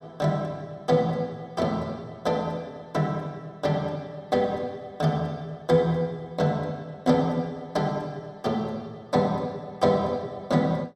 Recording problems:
none

